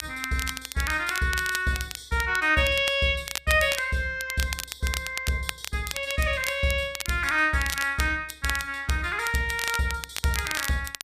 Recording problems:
crackling; vinyl, SNR 9 dB

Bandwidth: 14.5 kHz